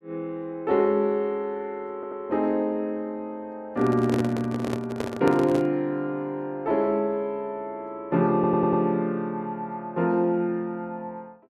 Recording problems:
audio stuttering; at 2 s and at 8.5 s
handling noise; from 3.5 to 5.5 s; peak 0 dB vs average level

